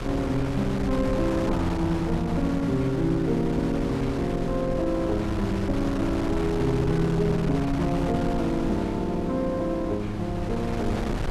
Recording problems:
wind noise; below 510 Hz, SNR 6 dB

